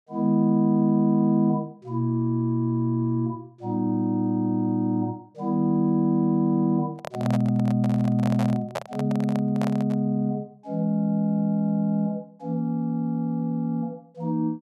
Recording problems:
handling noise; from 7 to 10 s; peak -1 dB vs average level

